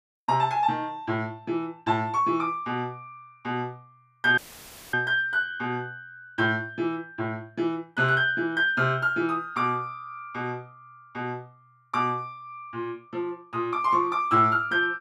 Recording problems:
audio cutting out; at 4.5 s for 0.5 s; filled with static

